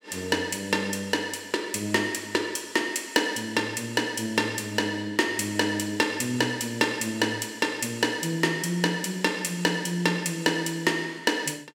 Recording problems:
none

